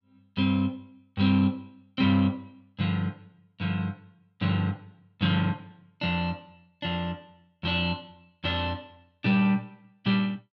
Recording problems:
none

